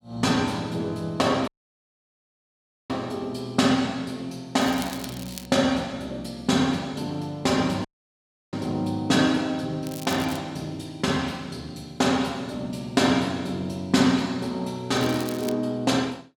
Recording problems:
dropout; at 1.5 s for 1.5 s and at 8 s for 0.5 s
crackle; at 4.5 s, at 10 s and at 15 s; loose cable, SNR 15 dB

